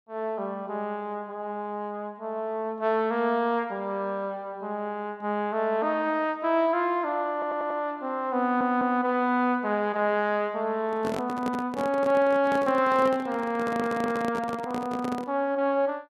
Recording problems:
audio stuttering; at 7.5 s, at 8.5 s and at 14 s
handling noise; from 11 to 15 s; peak -2 dB vs average level

